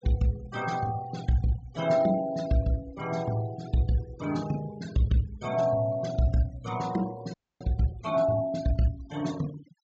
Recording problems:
treble cut off; nothing above 8 kHz
denoising artefacts; signal-to-artefact ratio 18 dB
audio freezing; at 7.5 s

